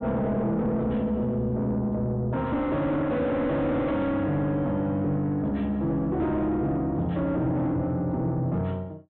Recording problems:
treble cut off; nothing above 4 kHz
distortion; soft clipping, signal-to-distortion ratio 5 dB

